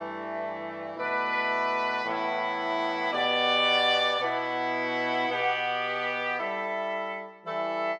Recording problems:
none

